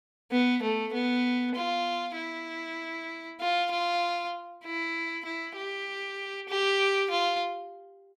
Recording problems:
none

